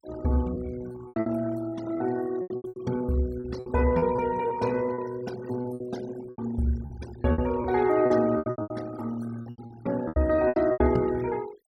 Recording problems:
denoising artefacts; signal-to-artefact ratio 18 dB
lost packets; 15% of the sound replaced, filled with repeated pitch periods

